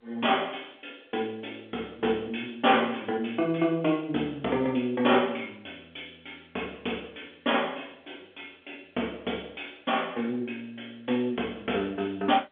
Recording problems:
telephone audio; 260 Hz to 3.5 kHz, G.711

